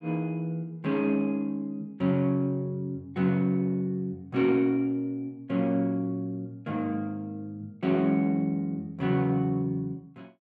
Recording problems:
none

